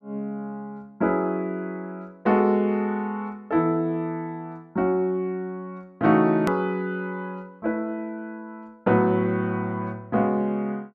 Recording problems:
click at an edit; at 6.5 s

